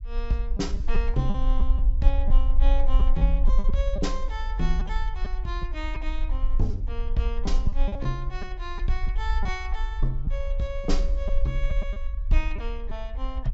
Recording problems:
treble missing; nothing above 8 kHz
low-frequency rumble; below 46 Hz, strongest tone 20 Hz, SNR -5 dB
packet loss; 5% of the sound replaced, filled with repeated pitch periods

